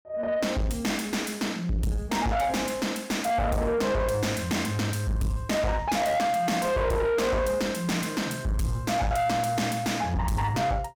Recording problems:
distorted audio; soft clipping, signal-to-distortion ratio 7 dB

